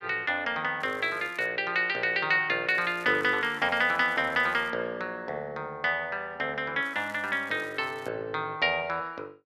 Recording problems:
crackling; at 1 s, from 2.5 to 4.5 s and from 7 to 8 s; loose cable, SNR 27 dB

